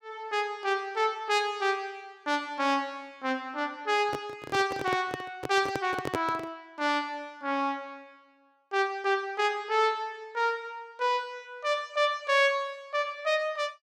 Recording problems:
handling noise; from 4 to 6.5 s; peak +3 dB vs average level

